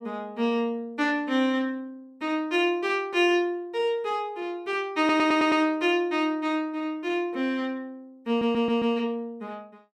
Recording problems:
stutter; at 5 s and at 8.5 s

